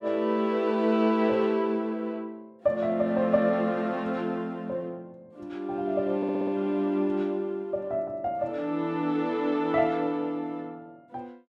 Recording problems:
audio stuttering; at 6 s

